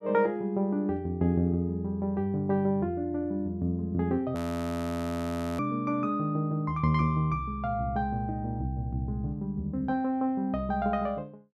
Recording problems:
audio freezing; at 4.5 s for 1 s

